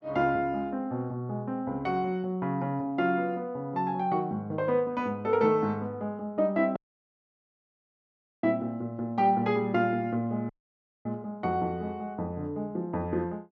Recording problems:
dropout; at 7 s for 1.5 s and at 10 s for 0.5 s

